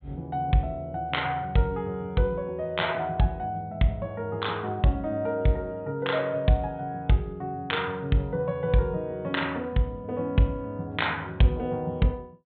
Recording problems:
treble missing; nothing above 4 kHz

